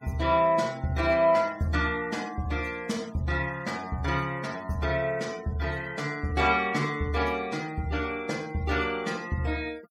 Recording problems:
noise reduction artefacts; signal-to-artefact ratio 22 dB

